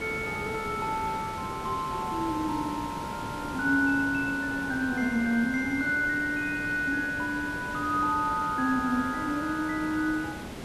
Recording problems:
background hiss; slope -5 dB per octave, SNR 10 dB

